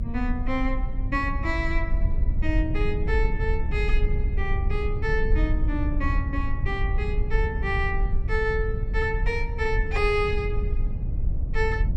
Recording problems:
rumble; below 68 Hz, SNR -1 dB

